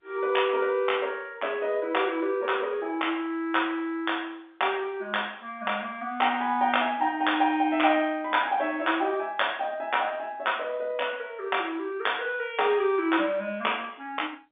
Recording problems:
phone line; 220 Hz to 3.6 kHz, G.711

